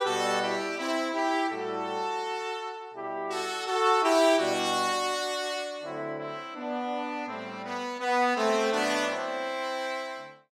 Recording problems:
none

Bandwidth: 16 kHz